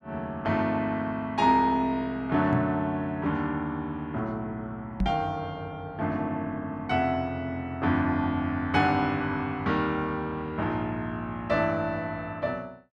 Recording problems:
microphone bump; at 2.5 s and at 5 s; peak +4 dB vs average level

